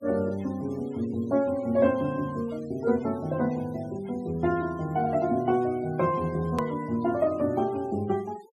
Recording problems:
noise reduction artefacts; signal-to-artefact ratio 24 dB
hard cut with a click; at 6.5 s

